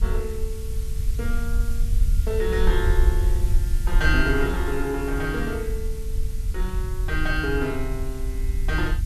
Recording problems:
background hiss; slope +3 dB per octave, SNR 16 dB
rumble; below 58 Hz, SNR -1 dB

